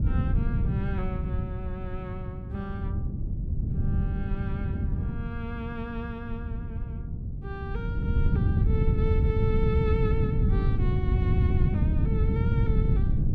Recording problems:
wind on the microphone; below 140 Hz, SNR -9 dB

